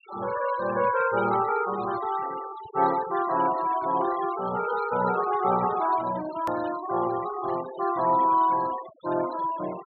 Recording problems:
low-pass filter; nothing above 4.2 kHz
denoising artefacts; signal-to-artefact ratio 17 dB
hard cut with a click; at 6.5 s

